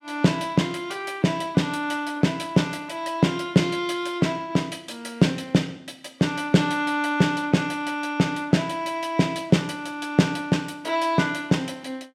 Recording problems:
none

